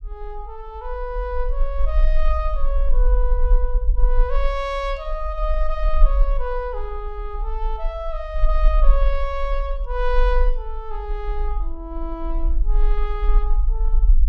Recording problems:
rumble; below 40 Hz, SNR -5 dB

